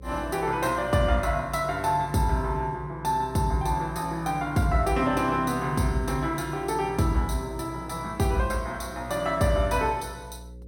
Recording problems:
hum; 60 Hz, harmonics up to 540 Hz, SNR 18 dB

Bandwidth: 16.5 kHz